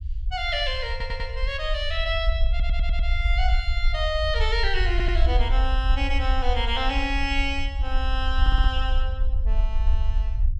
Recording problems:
rumble; below 58 Hz, SNR -1 dB
stutter; 4 times, first at 1 s

